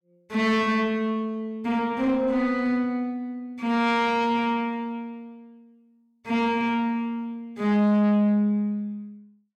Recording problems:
distorted audio; soft clipping, signal-to-distortion ratio 6 dB

